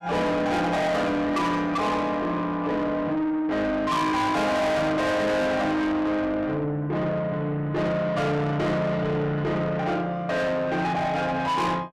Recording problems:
distortion; soft clipping, signal-to-distortion ratio 7 dB

